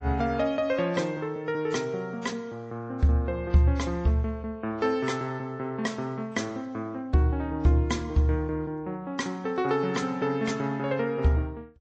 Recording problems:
lossy compression; MP3, then AAC, log-spectral distance 2 dB, nothing above 7.1 kHz

